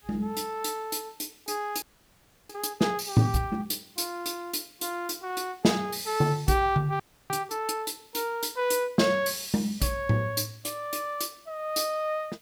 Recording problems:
hiss; SNR 29 dB
frozen audio; at 2 s for 0.5 s and at 7 s

